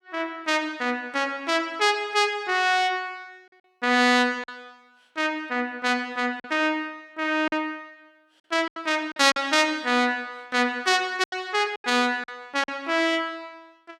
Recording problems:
lost packets; 4% of the sound replaced, filled with silence

